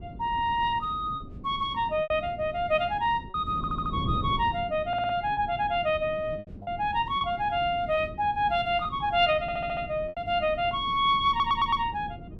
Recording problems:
wind on the microphone; below 240 Hz, SNR 13 dB
packet loss; 4% of the sound replaced, filled with repeated pitch periods
audio stuttering; 4 times, first at 3.5 s

